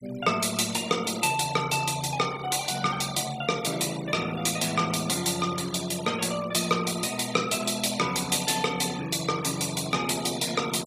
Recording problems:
denoising artefacts; signal-to-artefact ratio 14 dB

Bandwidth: 15 kHz